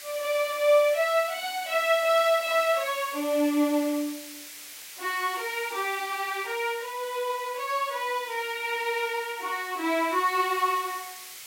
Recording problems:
background hiss; SNR 14 dB

